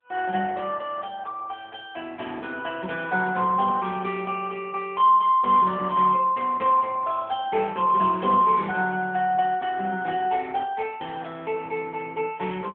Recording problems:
telephone audio; 280 Hz to 3.4 kHz, AMR-NB

